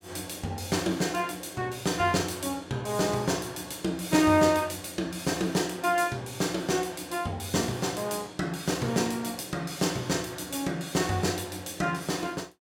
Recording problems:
none

